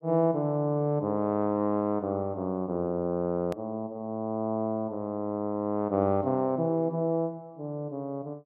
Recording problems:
click at an edit; at 3.5 s

